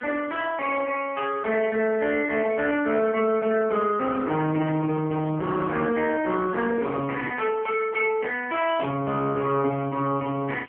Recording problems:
phone line; 190 Hz to 3.1 kHz, AMR-NB
distortion; soft clipping, signal-to-distortion ratio 13 dB
background hiss; SNR 28 dB
handling noise; from 4.5 to 7.5 s; peak -7 dB vs average level

